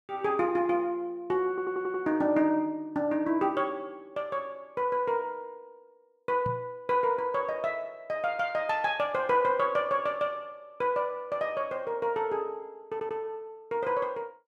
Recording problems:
audio stuttering; at 1.5 s and at 13 s
microphone thump; at 6.5 s; peak -3 dB vs average level

